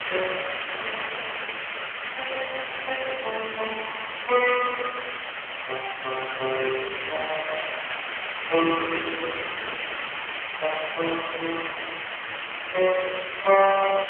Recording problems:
telephone audio; 340 Hz to 3.1 kHz, AMR-NB
hiss; SNR 4 dB

